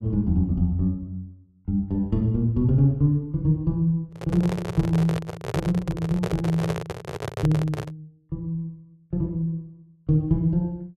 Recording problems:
handling noise; from 4 to 8 s; peak +1 dB vs average level

